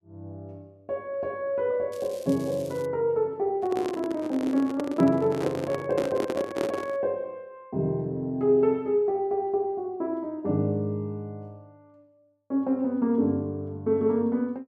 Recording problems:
crackling; at 2 s; loose cable, SNR 22 dB
handling noise; from 3.5 to 7 s; peak +1 dB vs average level

